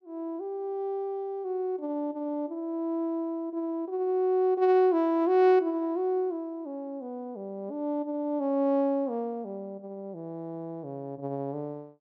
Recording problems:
none

